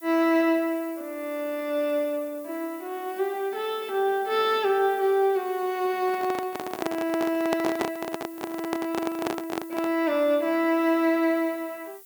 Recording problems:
background hiss; slope +4 dB per octave, SNR 20 dB
handling noise; from 6 to 10 s; peak +2 dB vs average level

